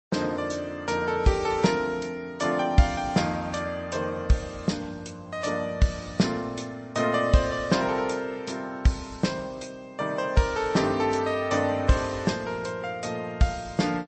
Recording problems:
codec artefacts; MP3, log-spectral distance 3 dB, nothing above 8.2 kHz

